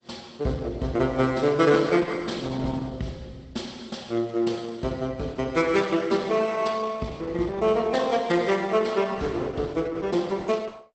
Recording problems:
codec artefacts; Opus, log-spectral distance 4 dB, nothing above 8.2 kHz

